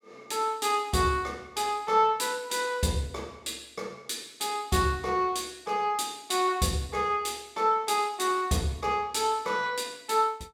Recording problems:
none

